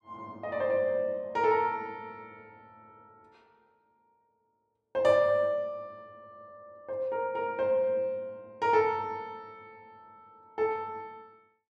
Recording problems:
none

